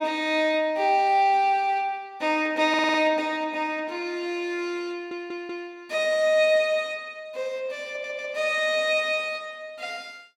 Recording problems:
stutter; at 2.5 s, at 5 s and at 8 s

